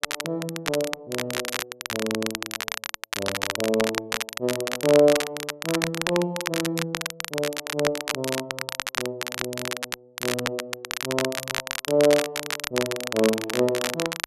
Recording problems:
crackle; vinyl, SNR 3 dB

